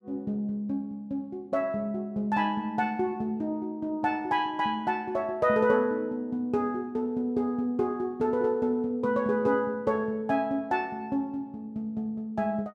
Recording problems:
none

